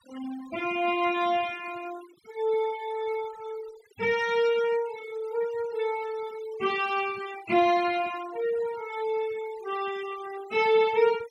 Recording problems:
noise reduction artefacts; signal-to-artefact ratio 18 dB

